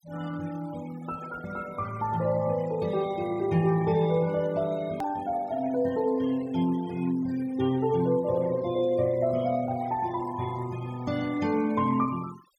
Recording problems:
noise reduction artefacts; signal-to-artefact ratio 19 dB
hard cut with a click; at 5 s

